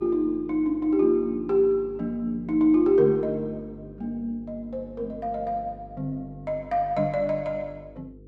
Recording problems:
electrical hum; 50 Hz, harmonics up to 500 Hz, SNR 22 dB

